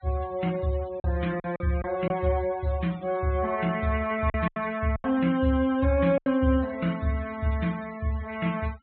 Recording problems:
treble missing; nothing above 4 kHz
denoising artefacts; signal-to-artefact ratio 20 dB
packet loss; 5% of the sound replaced, filled with silence

